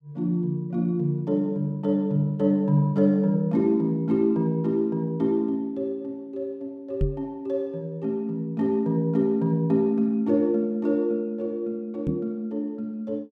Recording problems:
microphone bump; at 7 s and at 12 s; peak +3 dB vs average level

